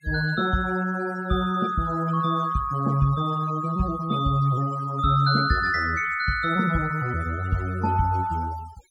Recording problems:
denoising artefacts; signal-to-artefact ratio 18 dB

